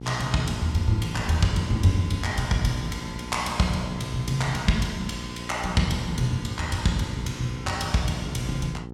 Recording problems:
hum; 60 Hz, harmonics up to 960 Hz, SNR 12 dB

